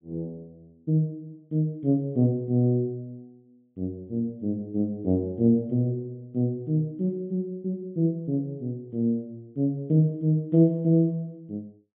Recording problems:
treble missing; nothing above 4 kHz

